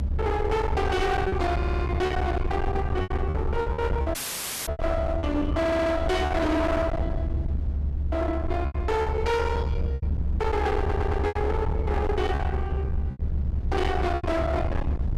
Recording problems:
distortion; hard clipping, uneven, signal-to-distortion ratio 6 dB
low-frequency rumble; below 150 Hz, SNR 2 dB
lost packets; 7% of the sound replaced, filled with repeated pitch periods
stutter; at 1.5 s, at 5.5 s and at 11 s
dropout; at 4 s for 0.5 s

